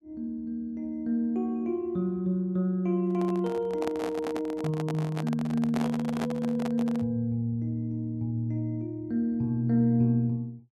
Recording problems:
handling noise; from 3 to 7 s; peak -1 dB vs average level

